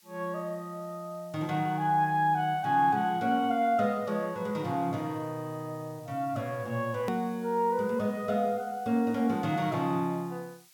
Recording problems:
hiss; slope +3 dB per octave, SNR 27 dB
hard cut with a click; at 7 s

